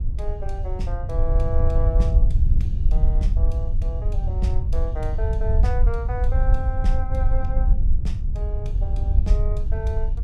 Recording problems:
low-frequency rumble; below 64 Hz, SNR -10 dB
wind noise; below 300 Hz, SNR 16 dB

